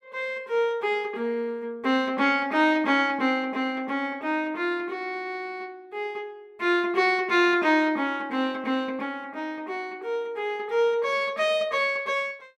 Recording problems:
none

